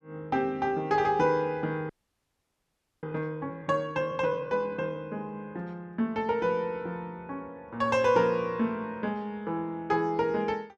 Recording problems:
audio freezing; at 2 s for 1 s

